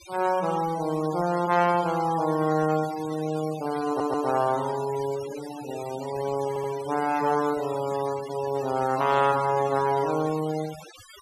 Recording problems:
noise reduction artefacts; signal-to-artefact ratio 15 dB
stutter; at 4 s and at 6.5 s

